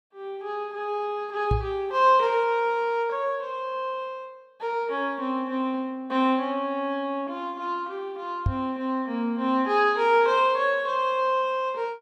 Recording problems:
microphone thump; at 1.5 s and at 8.5 s; peak +4 dB vs average level

